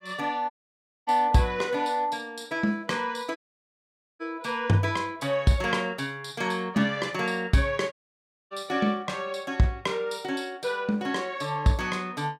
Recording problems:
audio cutting out; at 0.5 s for 0.5 s, at 3.5 s for 1 s and at 8 s for 0.5 s

